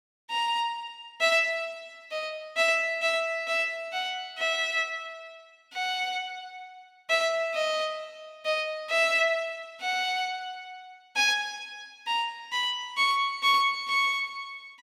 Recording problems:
none

